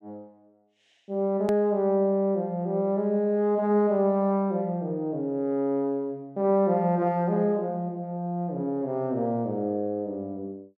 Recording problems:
edit click; at 1.5 s

